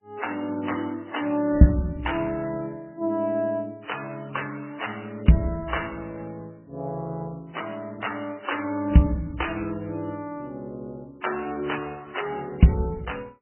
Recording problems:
codec artefacts; MP3, then AAC, log-spectral distance 6 dB, nothing above 3 kHz

